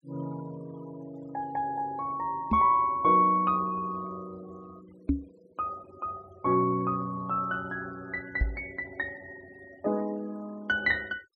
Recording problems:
denoising artefacts; signal-to-artefact ratio 26 dB
microphone thump; at 2.5 s, at 5 s and at 8.5 s; peak +6 dB vs average level

